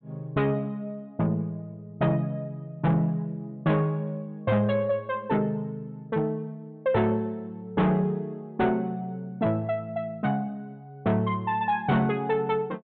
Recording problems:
low-pass filter; nothing above 4 kHz
distorted audio; soft clipping, signal-to-distortion ratio 11 dB

